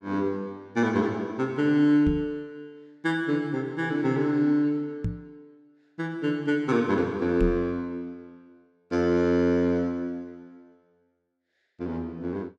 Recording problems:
knock on the microphone; at 2 s, at 5 s and at 7.5 s; peak +1 dB vs average level

